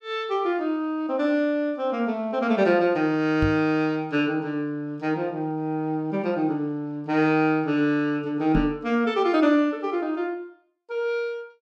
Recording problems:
knock on the microphone; at 3.5 s and at 8.5 s; peak +2 dB vs average level

